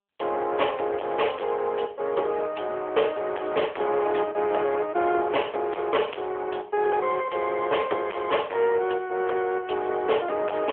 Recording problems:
phone line; 320 Hz to 3.3 kHz, AMR-NB
distorted audio; hard clipping, signal-to-distortion ratio 10 dB

